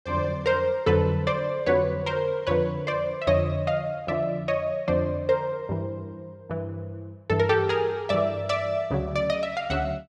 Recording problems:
none

